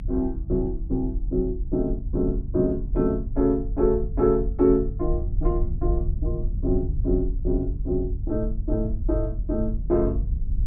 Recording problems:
low-frequency rumble; below 64 Hz, SNR 4 dB

